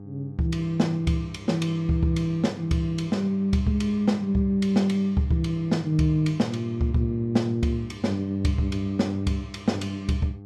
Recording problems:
electrical hum; 50 Hz, harmonics up to 800 Hz, SNR 17 dB

